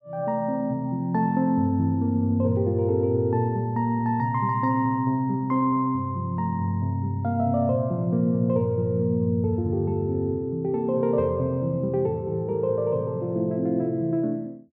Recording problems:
none

